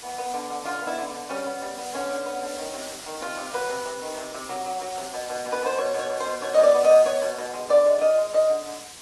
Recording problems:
lossy compression; AAC, log-spectral distance 10 dB
background hiss; slope 0 dB per octave, SNR 14 dB

